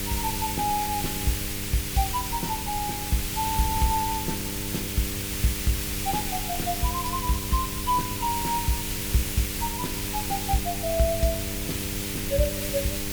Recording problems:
mains hum; 50 Hz, harmonics up to 1.1 kHz, SNR 8 dB
hiss; slope +3 dB per octave, SNR 1 dB
wind noise; below 120 Hz, SNR 11 dB

